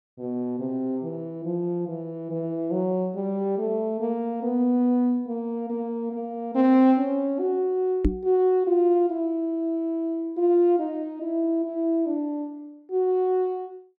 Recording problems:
microphone bump; at 8 s; peak +6 dB vs average level

